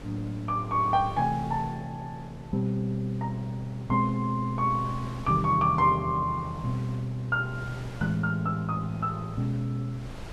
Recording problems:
mains hum; 50 Hz, harmonics up to 550 Hz, SNR 24 dB
wind on the microphone; below 580 Hz, SNR 18 dB

